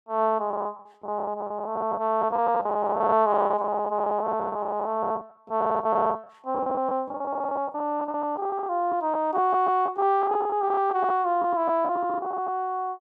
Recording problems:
lost packets; 16% of the sound replaced, filled with the last packet

